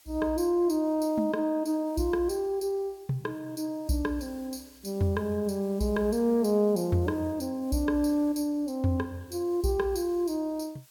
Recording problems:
background hiss; slope +1 dB per octave, SNR 28 dB

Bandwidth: 17.5 kHz